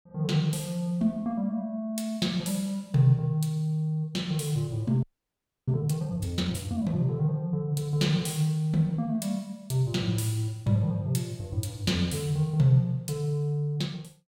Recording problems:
audio freezing; at 5 s for 0.5 s

